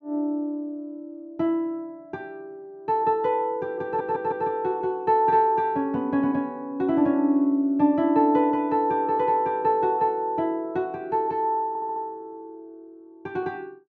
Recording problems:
audio stuttering; at 4 s and at 12 s

